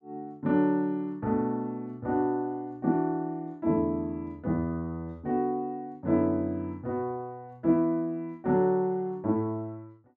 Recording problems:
none

